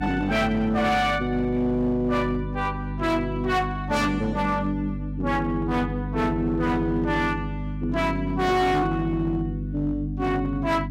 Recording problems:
distorted audio; hard clipping, uneven, signal-to-distortion ratio 12 dB
hum; 50 Hz, harmonics up to 300 Hz, SNR 6 dB

